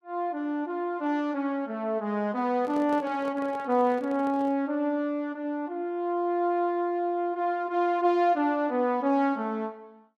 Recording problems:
microphone handling noise; from 2.5 to 4.5 s; peak -10 dB vs average level

